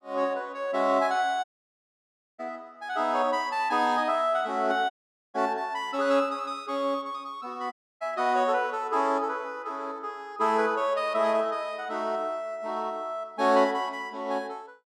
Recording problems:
dropout; at 1.5 s for 1 s, at 5 s and at 7.5 s

